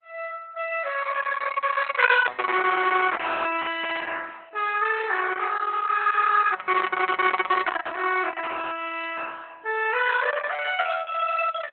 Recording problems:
lossy codec; Opus, log-spectral distance 5 dB, nothing above 4 kHz

